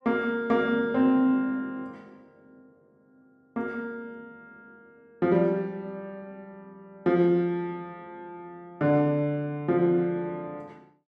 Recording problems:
none

